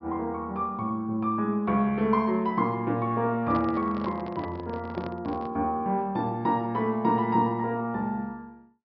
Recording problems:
treble missing; nothing above 5.5 kHz
microphone handling noise; from 3.5 to 5.5 s; peak -5 dB vs average level

